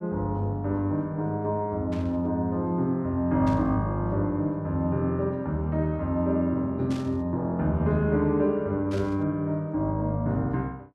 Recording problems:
burst of static; 4 times, first at 2 s; peak -13 dB vs average level

